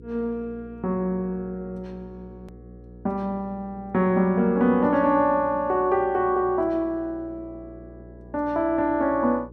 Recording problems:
electrical hum; 60 Hz, harmonics up to 480 Hz, SNR 21 dB
hard cut with a click; at 2.5 s

